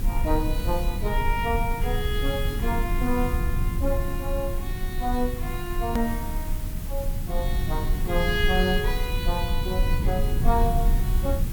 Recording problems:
mains hum; 50 Hz, harmonics up to 350 Hz, SNR 18 dB
background hiss; slope -1 dB per octave, SNR 12 dB
rumble; below 72 Hz, SNR -1 dB
click at an edit; at 6 s

